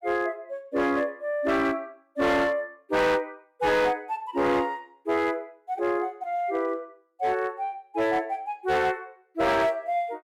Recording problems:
distorted audio; hard clipping, signal-to-distortion ratio 11 dB

